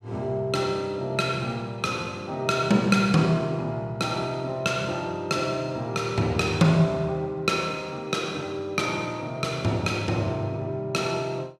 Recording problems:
none

